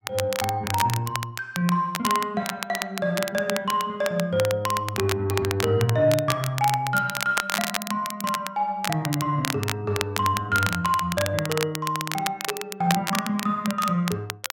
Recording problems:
crackle; vinyl, SNR 6 dB

